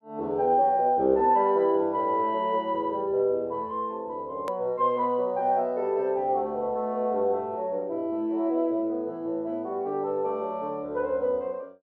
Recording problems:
click at an edit; at 4.5 s

